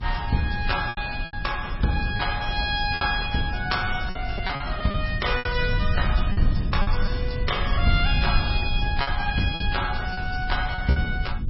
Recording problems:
lossy compression; MP3, log-spectral distance 5 dB, nothing above 5.5 kHz
hum; 50 Hz, harmonics up to 550 Hz, SNR 15 dB
low-frequency rumble; below 82 Hz, SNR 3 dB
packet loss; 7% of the sound replaced, filled with repeated pitch periods

